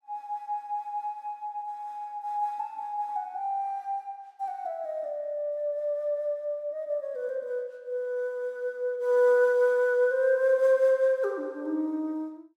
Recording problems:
none

